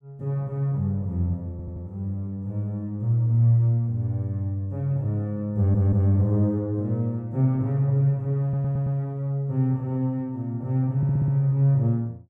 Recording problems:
stutter; 4 times, first at 1.5 s

